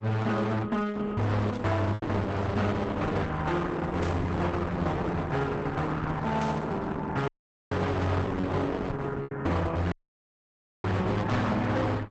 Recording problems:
lossy compression; Opus, log-spectral distance 3 dB, nothing above 8 kHz
distorted audio; hard clipping, signal-to-distortion ratio 8 dB
lost packets; 1.7% of the sound replaced, filled with repeated pitch periods
static burst; 4 times, first at 1.5 s; peak -12 dB vs average level
dropout; at 7.5 s and at 10 s for 1 s

